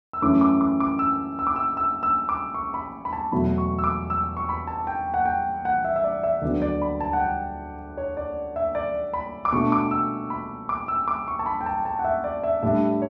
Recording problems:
none

